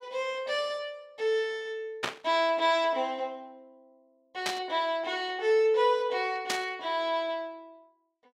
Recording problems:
static burst; at 2 s, at 4.5 s and at 6.5 s; peak +3 dB vs average level

